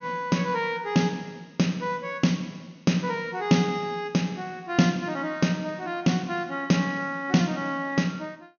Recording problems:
treble cut off; nothing above 6.6 kHz

